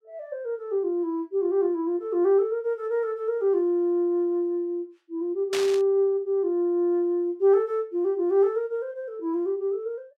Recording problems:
burst of static; at 5.5 s; peak -2 dB vs average level

